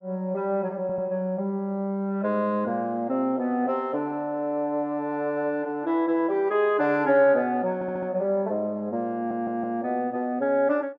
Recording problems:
stutter; at 1 s, at 7.5 s and at 9 s

